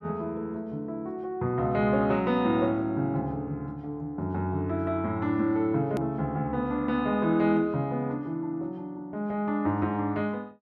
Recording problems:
click at an edit; at 6 s

